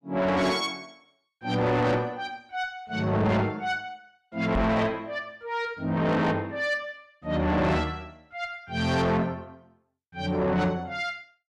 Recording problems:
distortion; soft clipping, signal-to-distortion ratio 8 dB
knock on the microphone; at 4.5 s; peak +3 dB vs average level

